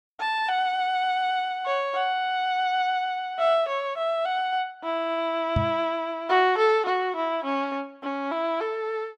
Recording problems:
microphone bump; at 5.5 s; peak +4 dB vs average level

